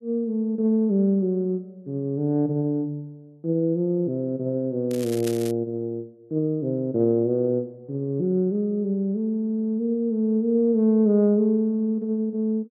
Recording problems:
crackling; at 5 s; loose cable, SNR 16 dB

